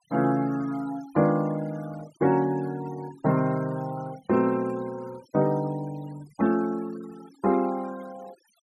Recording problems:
noise reduction artefacts; signal-to-artefact ratio 22 dB

